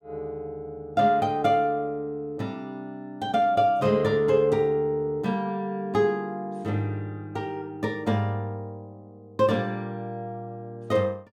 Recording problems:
none

